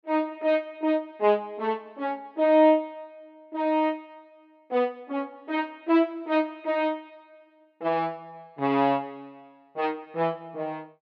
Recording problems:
none

